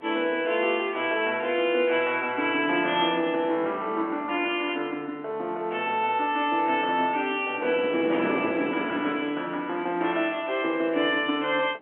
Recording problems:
telephone audio; 220 Hz to 3.4 kHz, G.711
wind noise; below 650 Hz, SNR 11 dB

